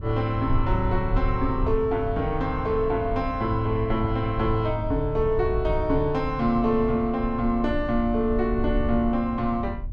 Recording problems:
rumble; below 70 Hz, SNR 8 dB

